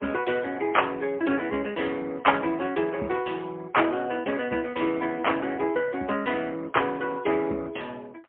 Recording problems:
phone line; 190 Hz to 3.2 kHz, AMR-NB, then MP3

